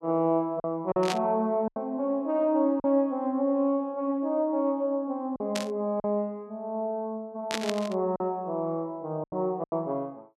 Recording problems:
lost packets; 5% of the sound replaced, filled with silence
static burst; at 1 s, at 5.5 s and at 7.5 s; peak +2 dB vs average level

